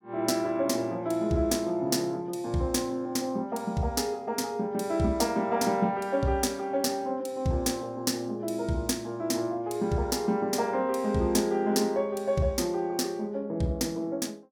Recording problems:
none

